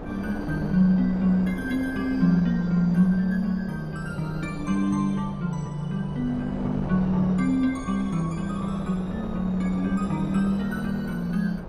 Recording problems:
wind noise; below 560 Hz, SNR 12 dB

